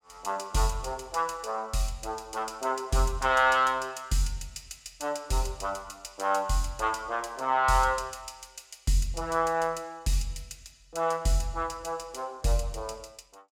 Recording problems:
none

